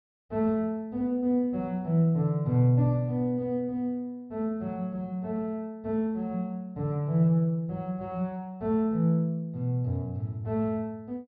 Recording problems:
treble cut off; nothing above 5.5 kHz

